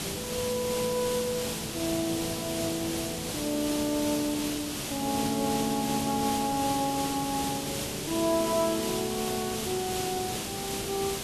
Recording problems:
background hiss; SNR 3 dB

